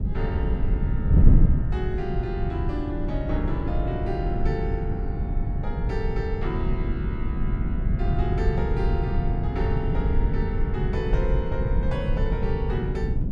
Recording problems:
wind noise; below 120 Hz, SNR -6 dB

